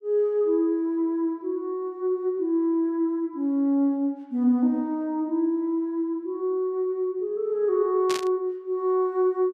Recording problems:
burst of static; at 8 s; peak -3 dB vs average level

